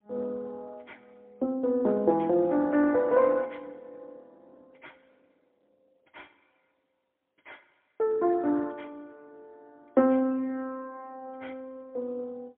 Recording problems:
phone line; 220 Hz to 2.6 kHz, AMR-NB, then MP3

